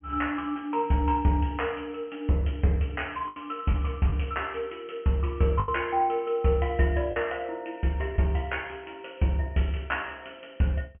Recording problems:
low-pass filter; nothing above 3 kHz
packet loss; 2% of the sound replaced, filled with the last packet

